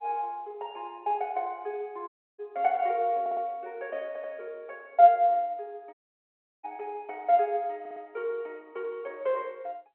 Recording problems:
phone line; 320 Hz to 3.5 kHz, G.711
dropout; at 2 s and at 6 s for 0.5 s
audio stuttering; at 3 s, at 4 s and at 8 s

